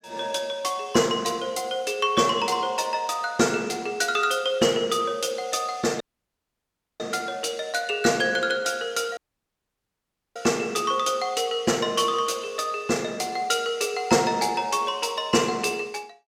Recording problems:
dropout; at 6 s for 1 s and at 9 s for 1 s

